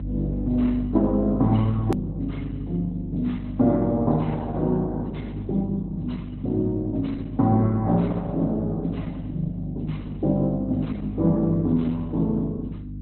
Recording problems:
codec artefacts; Opus, log-spectral distance 2 dB, nothing above 13.3 kHz
electrical hum; 50 Hz, harmonics up to 300 Hz, SNR 7 dB
edit click; at 2 s

